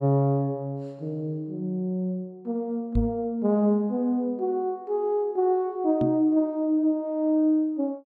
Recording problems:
microphone bump; at 3 s and at 6 s; peak +2 dB vs average level

